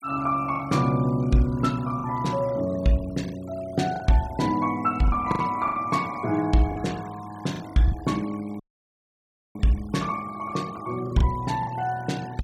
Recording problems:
noise reduction artefacts; signal-to-artefact ratio 21 dB
packet loss; 6% of the sound replaced, filled with the last packet
audio cutting out; at 8.5 s for 1 s

